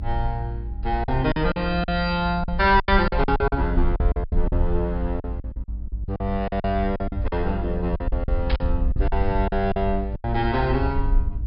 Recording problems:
low-pass filter; nothing above 5.5 kHz
hum; 50 Hz, harmonics up to 700 Hz, SNR 18 dB
low-frequency rumble; below 62 Hz, SNR 3 dB
lost packets; 13% of the sound replaced, filled with silence
static burst; at 8.5 s; peak -2 dB vs average level

